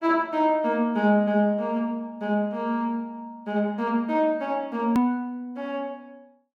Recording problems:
edit click; at 5 s

